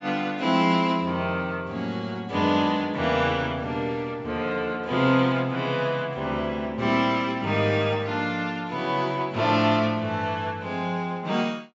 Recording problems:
treble cut off; nothing above 7.6 kHz

